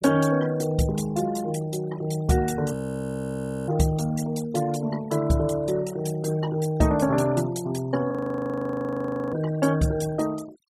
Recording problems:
noise reduction artefacts; signal-to-artefact ratio 17 dB
frozen audio; at 2.5 s for 1 s and at 8 s for 1 s

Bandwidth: 15.5 kHz